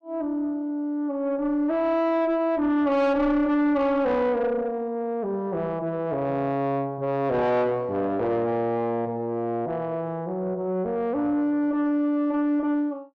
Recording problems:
distorted audio; soft clipping, signal-to-distortion ratio 10 dB

